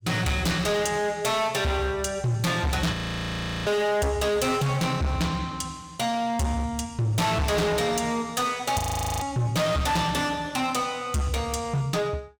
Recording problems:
distorted audio; hard clipping, signal-to-distortion ratio 6 dB
frozen audio; at 3 s for 0.5 s and at 9 s

